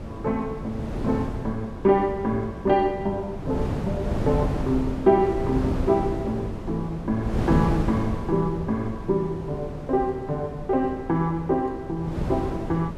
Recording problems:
wind noise; below 350 Hz, SNR 6 dB

